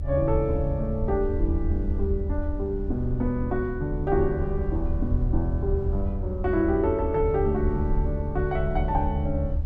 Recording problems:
rumble; below 78 Hz, SNR 3 dB

